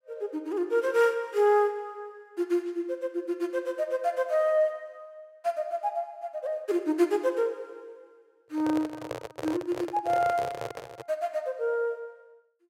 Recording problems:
handling noise; from 8.5 to 11 s; peak -2 dB vs average level

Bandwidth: 16 kHz